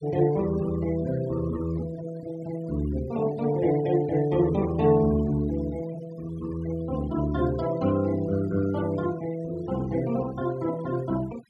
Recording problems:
denoising artefacts; signal-to-artefact ratio 19 dB

